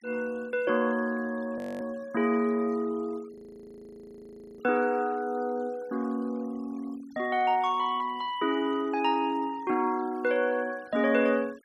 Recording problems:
noise reduction artefacts; signal-to-artefact ratio 26 dB
frozen audio; at 1.5 s and at 3.5 s for 1.5 s

